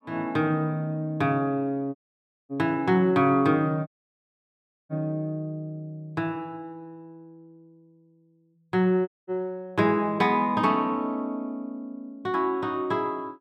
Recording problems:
audio cutting out; at 2 s for 0.5 s, at 4 s for 1 s and at 9 s

